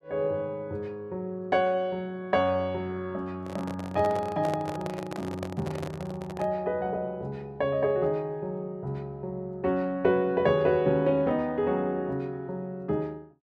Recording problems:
microphone handling noise; from 3.5 to 6.5 s; peak -2 dB vs average level

